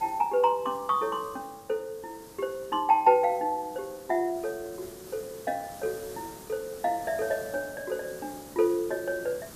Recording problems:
background hiss; SNR 18 dB

